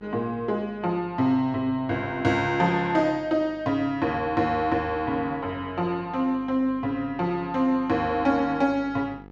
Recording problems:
electrical hum; 50 Hz, harmonics up to 1.8 kHz, SNR 23 dB

